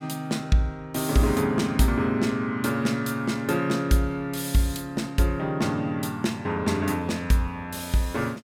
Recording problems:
none

